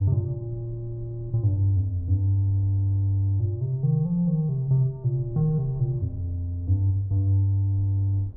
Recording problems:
rumble; below 84 Hz, SNR 23 dB

